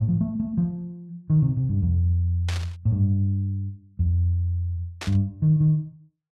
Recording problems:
burst of static; at 2.5 s and at 5 s; peak -5 dB vs average level

